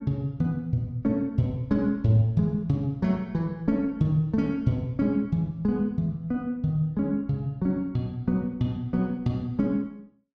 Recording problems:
none

